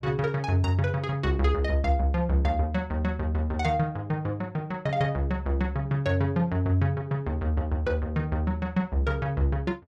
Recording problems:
none

